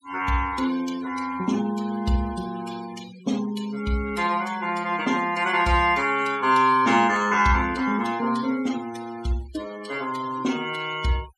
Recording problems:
noise reduction artefacts; signal-to-artefact ratio 16 dB

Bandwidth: 14.5 kHz